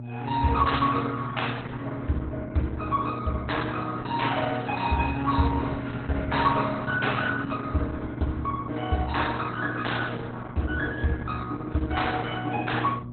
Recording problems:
codec artefacts; AAC, then Opus, log-spectral distance 5 dB, nothing above 4.1 kHz
electrical hum; 60 Hz, harmonics up to 600 Hz, SNR 10 dB

